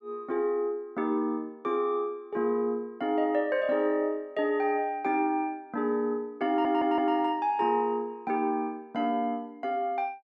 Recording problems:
stutter; at 6.5 s

